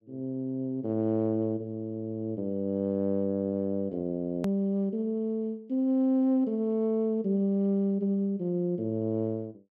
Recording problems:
edit click; at 4.5 s

